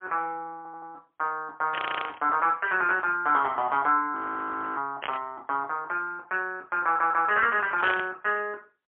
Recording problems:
phone line; 320 Hz to 3.3 kHz, AMR-NB, then MP3
stutter; at 0.5 s, at 2 s and at 7 s
burst of static; at 1.5 s, at 5 s and at 8 s; peak +1 dB vs average level
frozen audio; at 4 s for 0.5 s

